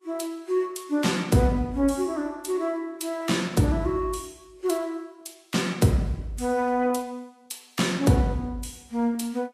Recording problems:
codec artefacts; Vorbis, log-spectral distance 3 dB, nothing above 13.5 kHz

